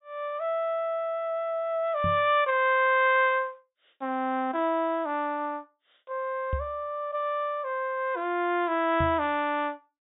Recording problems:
treble missing; nothing above 4 kHz
microphone thump; at 2 s, at 6.5 s and at 9 s; peak 0 dB vs average level

